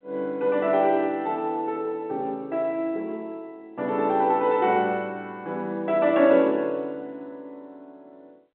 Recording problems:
telephone audio; 150 Hz to 3.6 kHz, G.711

